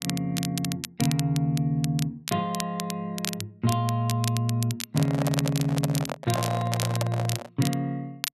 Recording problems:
crackle; vinyl, SNR 8 dB
handling noise; from 5 to 7.5 s; peak +1 dB vs average level

